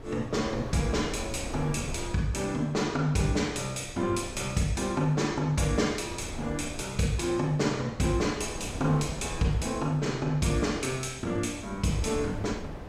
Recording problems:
wind noise; below 460 Hz, SNR 12 dB

